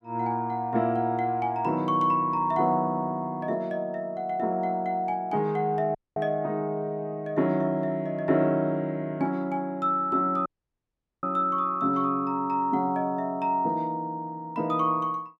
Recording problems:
audio cutting out; at 6 s and at 10 s for 1 s

